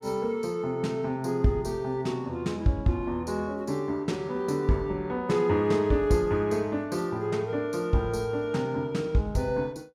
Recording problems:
none

